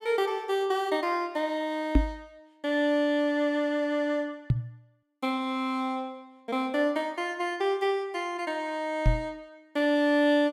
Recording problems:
microphone thump; at 2 s, at 4.5 s and at 9 s; peak +9 dB vs average level

